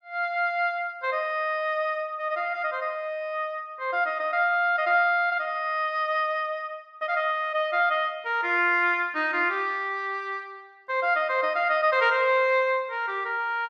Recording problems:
none

